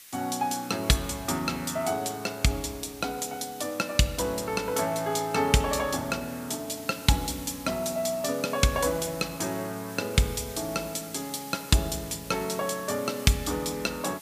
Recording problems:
hiss; SNR 15 dB

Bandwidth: 15 kHz